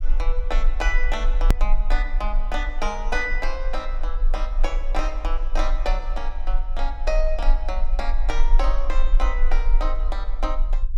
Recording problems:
rumble; below 34 Hz, strongest tone 20 Hz, SNR -4 dB
click at an edit; at 1.5 s

